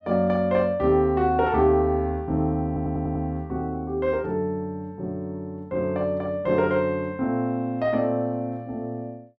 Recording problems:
stutter; at 2.5 s

